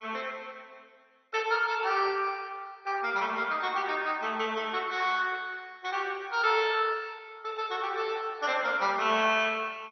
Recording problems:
lossy codec; MP2, log-spectral distance 5 dB, nothing above 5.8 kHz

